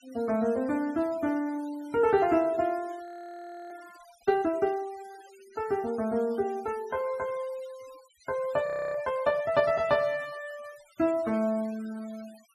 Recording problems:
noise reduction artefacts; signal-to-artefact ratio 23 dB
audio freezing; at 3 s for 0.5 s and at 8.5 s

